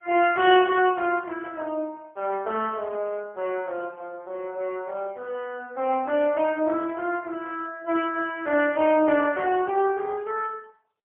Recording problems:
telephone audio; 240 Hz to 3.3 kHz, AMR-NB, then MP3

